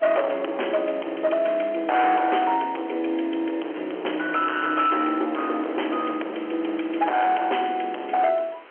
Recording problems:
phone line; 280 Hz to 3.2 kHz, G.711
distorted audio; hard clipping, signal-to-distortion ratio 9 dB
background hiss; SNR 21 dB

